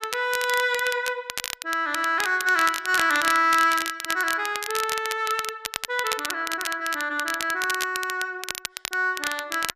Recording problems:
crackling; vinyl, SNR 8 dB

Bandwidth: 14.5 kHz